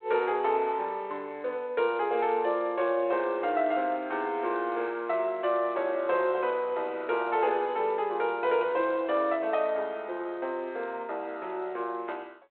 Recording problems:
telephone audio; 320 Hz to 3.3 kHz, G.726

